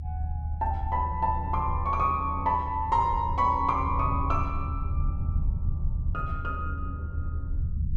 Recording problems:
rumble; below 82 Hz, SNR 4 dB

